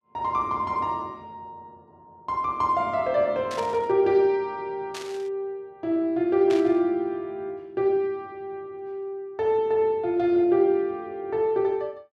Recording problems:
static burst; at 3.5 s, at 5 s and at 6.5 s; peak -8 dB vs average level

